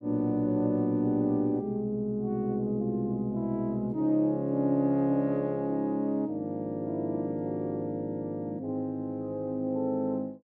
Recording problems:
none

